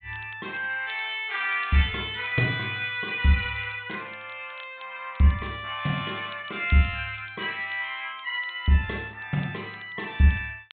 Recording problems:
low-pass filter; nothing above 4 kHz
crackle; vinyl, SNR 27 dB

